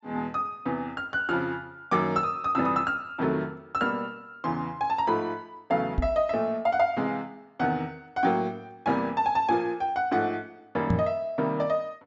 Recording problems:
treble missing; nothing above 8 kHz
microphone bump; at 6 s and at 11 s; peak +6 dB vs average level

